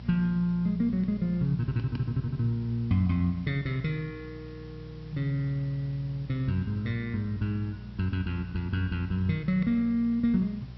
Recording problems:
treble missing; nothing above 5.6 kHz
hum; 60 Hz, harmonics up to 420 Hz, SNR 15 dB
background hiss; slope -2 dB per octave, SNR 27 dB

